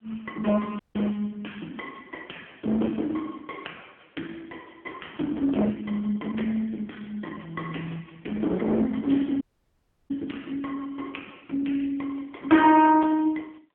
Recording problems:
telephone audio; 240 Hz to 3.3 kHz, AMR-NB
distortion; hard clipping, signal-to-distortion ratio 11 dB
audio cutting out; at 1 s and at 9.5 s for 0.5 s

